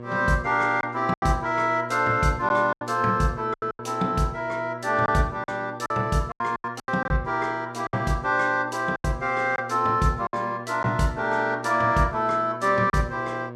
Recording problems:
hum; 60 Hz, harmonics up to 1.7 kHz, SNR 16 dB
lost packets; 7% of the sound replaced, filled with silence

